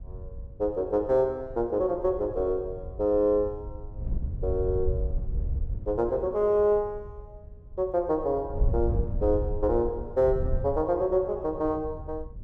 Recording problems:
wind noise; below 86 Hz, SNR 8 dB

